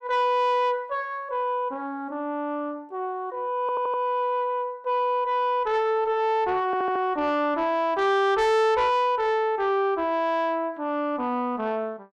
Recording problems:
distorted audio; soft clipping, signal-to-distortion ratio 11 dB
stutter; at 3.5 s and at 6.5 s

